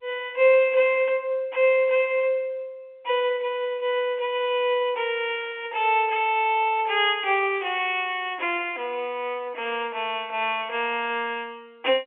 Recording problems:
telephone audio; 300 Hz to 3.4 kHz, G.711

